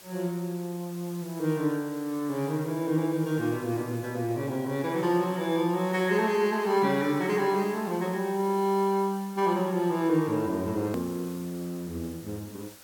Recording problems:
background hiss; slope -1 dB per octave, SNR 20 dB
click at an edit; at 11 s

